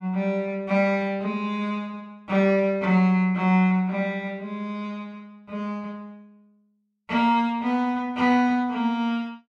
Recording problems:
none

